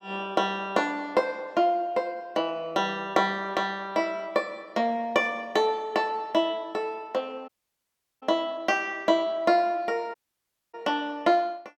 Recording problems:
audio cutting out; at 7.5 s for 0.5 s and at 10 s for 0.5 s

